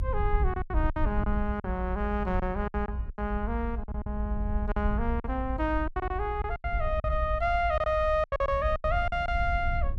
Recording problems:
rumble; below 68 Hz, SNR 3 dB
packet loss; 12% of the sound replaced, filled with silence

